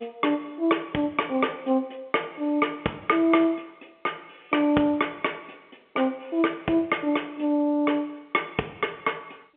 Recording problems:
phone line; 260 Hz to 3.3 kHz, G.711

